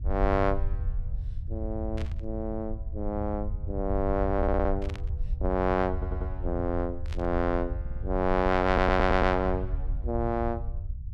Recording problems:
rumble; below 76 Hz, SNR 5 dB
burst of static; at 2 s, at 5 s and at 7 s; peak -10 dB vs average level
audio stuttering; 4 times, first at 4.5 s

